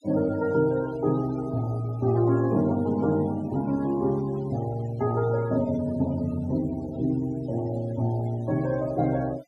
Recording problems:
noise reduction artefacts; signal-to-artefact ratio 20 dB

